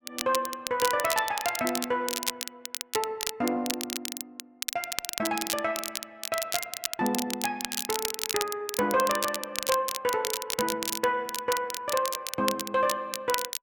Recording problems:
crackle; vinyl, SNR 3 dB

